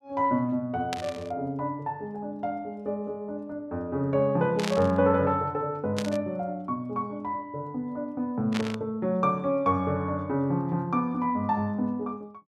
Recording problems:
burst of static; 4 times, first at 1 s; peak 0 dB vs average level

